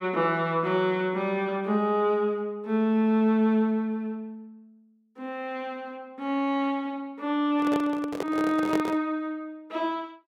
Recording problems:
microphone handling noise; from 7.5 to 9 s; peak 0 dB vs average level

